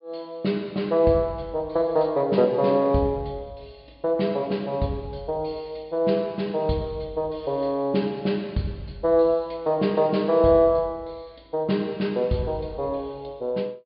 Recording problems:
treble cut off; nothing above 4.8 kHz

